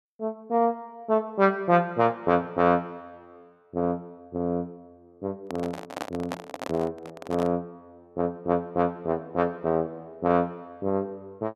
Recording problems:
microphone handling noise; from 5.5 to 7.5 s; peak -1 dB vs average level

